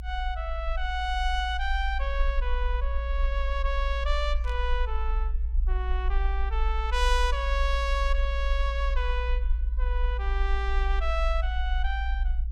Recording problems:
low-frequency rumble; below 56 Hz, SNR -2 dB
static burst; at 4.5 s; peak -12 dB vs average level

